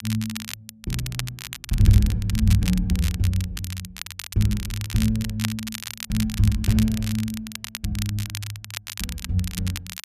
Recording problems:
crackle; vinyl, SNR 10 dB

